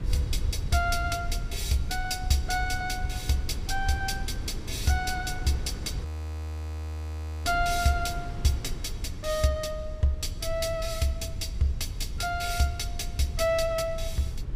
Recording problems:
low-frequency rumble; below 80 Hz, SNR 7 dB
wind on the microphone; below 470 Hz, SNR 15 dB
audio freezing; at 6 s for 1.5 s

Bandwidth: 15 kHz